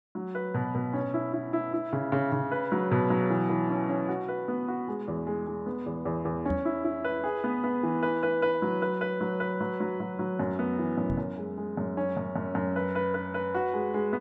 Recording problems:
microphone bump; at 6.5 s and at 11 s; peak +1 dB vs average level

